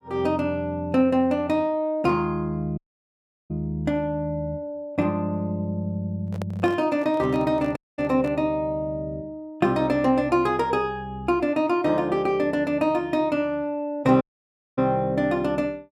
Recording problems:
audio cutting out; at 3 s for 0.5 s, at 8 s and at 14 s for 0.5 s
microphone handling noise; from 6.5 to 8.5 s; peak -7 dB vs average level

